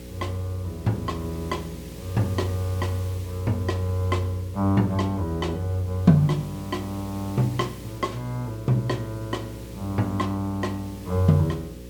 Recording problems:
hum; 60 Hz, harmonics up to 540 Hz, SNR 15 dB
background hiss; SNR 20 dB

